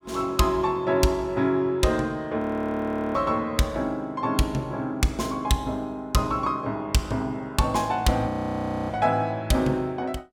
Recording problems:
audio freezing; at 2.5 s for 1 s and at 8.5 s for 0.5 s

